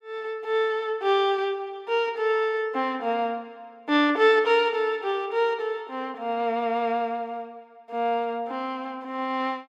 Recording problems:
none

